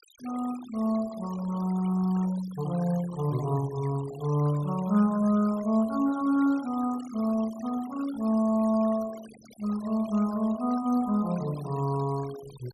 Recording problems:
denoising artefacts; signal-to-artefact ratio 19 dB

